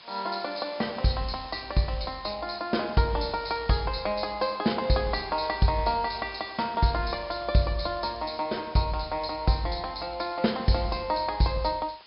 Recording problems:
low-pass filter; nothing above 5.5 kHz
hiss; slope +1 dB per octave, SNR 20 dB

